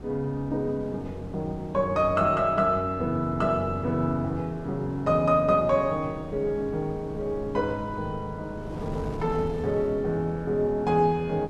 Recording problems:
wind noise; below 390 Hz, SNR 14 dB

